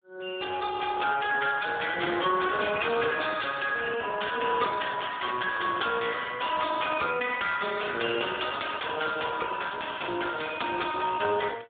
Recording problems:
phone line; 300 Hz to 3.5 kHz, Speex

